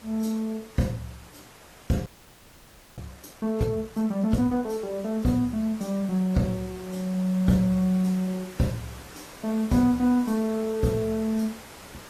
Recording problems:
codec artefacts; AAC, log-spectral distance 4 dB
hiss; slope -4 dB per octave, SNR 19 dB
frozen audio; at 2 s for 1 s

